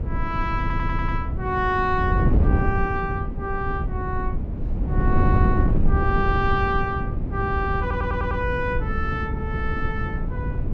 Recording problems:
wind on the microphone; below 150 Hz, SNR -1 dB
stutter; at 0.5 s and at 8 s

